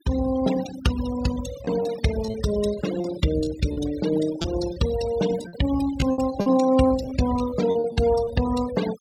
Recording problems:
denoising artefacts; signal-to-artefact ratio 11 dB
packet loss; 8% of the sound replaced, filled with repeated pitch periods

